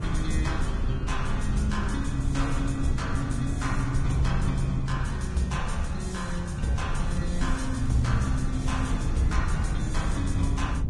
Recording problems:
codec artefacts; Vorbis, log-spectral distance 2 dB, nothing above 10.1 kHz
low-frequency rumble; below 110 Hz, SNR 1 dB
crackle; from 7 to 9 s; loose cable, SNR 24 dB

